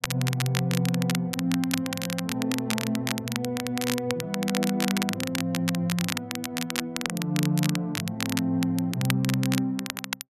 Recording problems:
crackle; vinyl, SNR 4 dB

